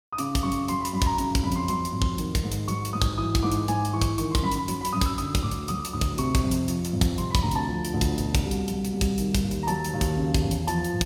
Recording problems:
none

